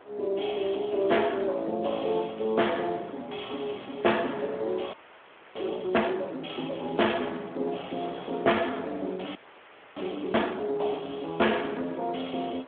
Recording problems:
telephone audio; 280 Hz to 3.4 kHz, Speex
distorted audio; soft clipping, signal-to-distortion ratio 14 dB
wind noise; below 1.4 kHz, SNR 19 dB
audio freezing; at 5 s for 0.5 s and at 9.5 s for 0.5 s

